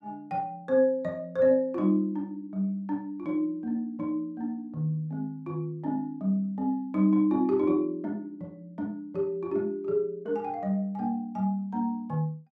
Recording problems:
none

